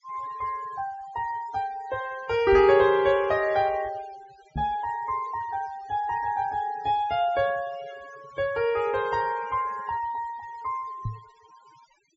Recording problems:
treble cut off; nothing above 8 kHz
denoising artefacts; signal-to-artefact ratio 20 dB
microphone bump; at 2.5 s, at 4.5 s and at 11 s; peak -2 dB vs average level

